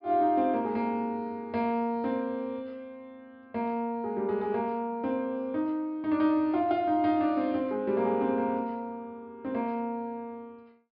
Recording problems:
treble cut off; nothing above 5.5 kHz

